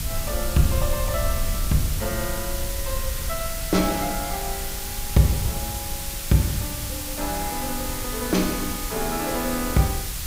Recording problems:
background hiss; slope +2 dB per octave, SNR 4 dB
low-frequency rumble; below 72 Hz, SNR 7 dB

